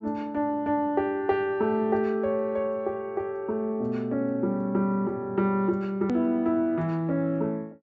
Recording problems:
low-pass filter; nothing above 8 kHz
edit click; at 6 s

